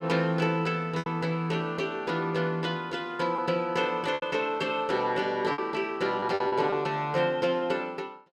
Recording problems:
lost packets; 5% of the sound replaced, filled with repeated pitch periods

